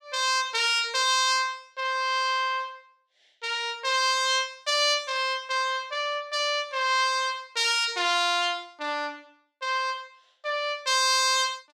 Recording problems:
none

